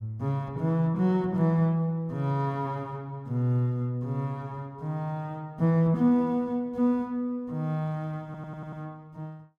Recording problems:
audio stuttering; at 8.5 s

